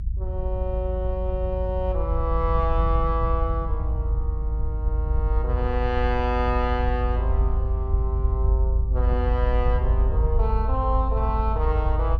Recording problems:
rumble; below 76 Hz, strongest tone 52 Hz, SNR -3 dB

